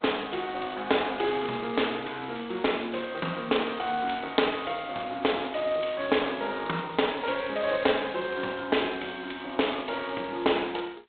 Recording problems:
telephone audio; 240 Hz to 3.7 kHz, G.726

